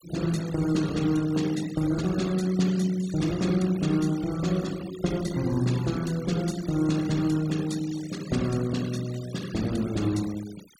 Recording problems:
noise reduction artefacts; signal-to-artefact ratio 17 dB

